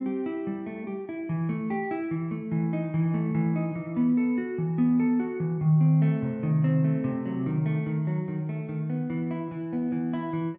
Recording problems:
none

